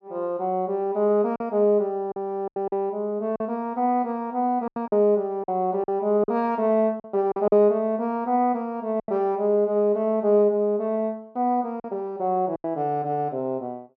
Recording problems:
packet loss; 6% of the sound replaced, filled with silence

